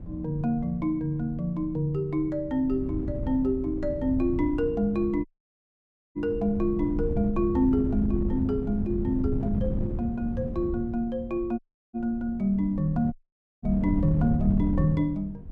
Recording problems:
wind noise; below 160 Hz, SNR 7 dB
audio cutting out; at 5.5 s for 1 s, at 12 s and at 13 s

